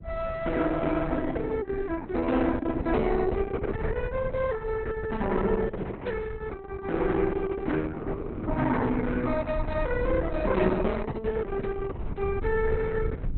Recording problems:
lossy compression; Opus, log-spectral distance 3 dB, nothing above 4 kHz
low-frequency rumble; below 100 Hz, SNR 8 dB

